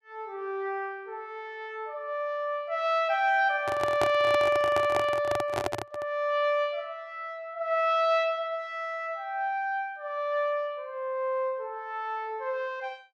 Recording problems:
handling noise; from 3.5 to 6 s; peak +4 dB vs average level

